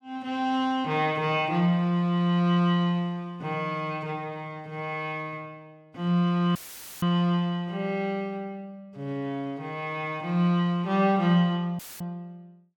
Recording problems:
dropout; at 6.5 s and at 12 s; filled with static

